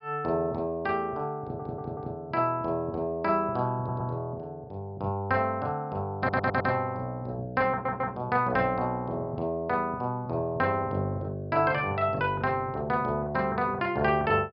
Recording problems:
treble cut off; nothing above 5.5 kHz
audio stuttering; 4 times, first at 1.5 s

